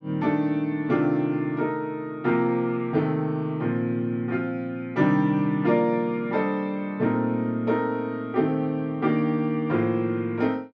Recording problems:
none

